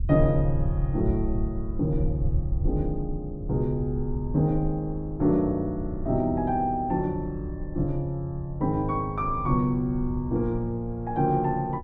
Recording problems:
low-frequency rumble; below 72 Hz, SNR 8 dB

